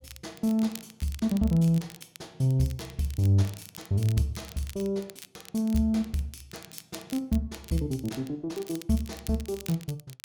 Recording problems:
crackling; vinyl, SNR 18 dB

